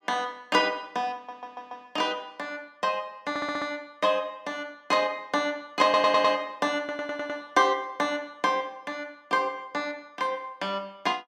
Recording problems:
stutter; 4 times, first at 1 s

